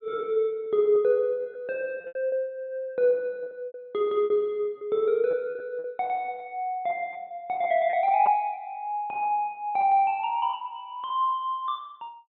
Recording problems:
treble cut off; nothing above 3.8 kHz
lost packets; 8% of the sound replaced, filled with repeated pitch periods

